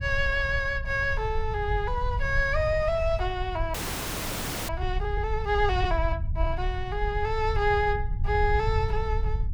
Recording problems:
rumble; below 82 Hz, SNR 4 dB
frozen audio; at 3.5 s for 1 s

